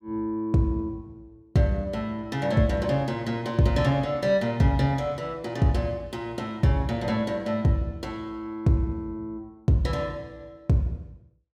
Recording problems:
none

